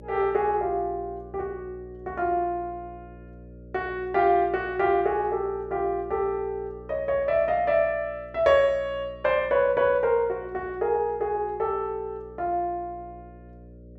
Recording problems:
electrical hum; 60 Hz, harmonics up to 600 Hz, SNR 21 dB

